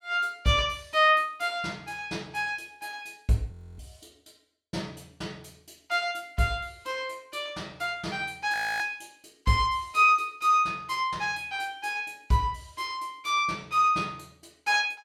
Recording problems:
frozen audio; at 3.5 s and at 8.5 s

